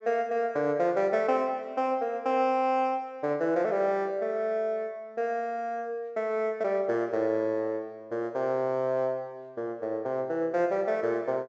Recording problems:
treble missing; nothing above 7.8 kHz

